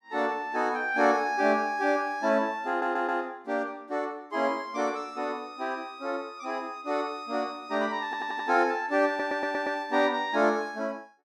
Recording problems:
audio stuttering; at 2.5 s, at 8 s and at 9 s

